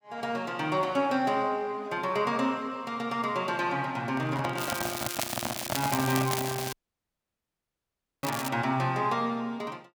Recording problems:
microphone handling noise; from 4 to 6.5 s; peak +2 dB vs average level
crackling; from 4.5 to 8.5 s; loose cable, SNR 5 dB
dropout; at 6.5 s for 1.5 s

